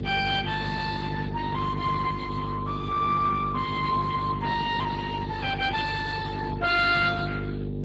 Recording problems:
lossy codec; Speex, log-spectral distance 5 dB, nothing above 7.3 kHz
hum; 50 Hz, harmonics up to 500 Hz, SNR 6 dB

